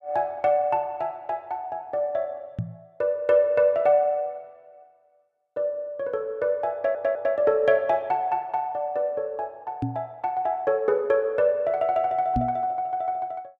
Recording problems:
microphone thump; at 2.5 s, at 10 s and at 12 s; peak +2 dB vs average level
stutter; at 7 s

